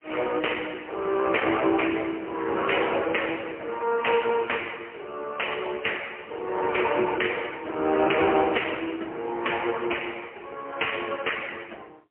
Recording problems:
phone line; 300 Hz to 3.1 kHz, AMR-NB, then MP3

